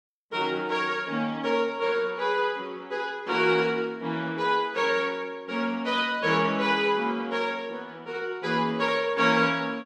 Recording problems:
none

